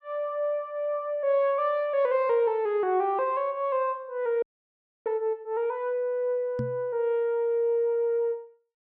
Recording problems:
audio freezing; at 4.5 s for 0.5 s
knock on the microphone; at 6.5 s; peak -2 dB vs average level

